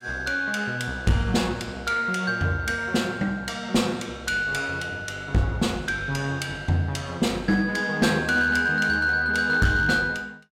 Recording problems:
distortion; hard clipping, uneven, signal-to-distortion ratio 12 dB

